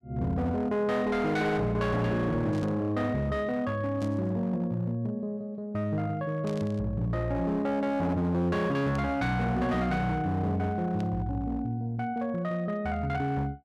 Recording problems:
distortion; hard clipping, signal-to-distortion ratio 12 dB
static burst; 5 times, first at 2.5 s; peak -14 dB vs average level

